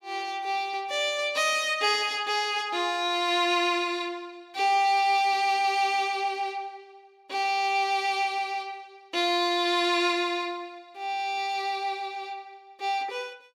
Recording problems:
none

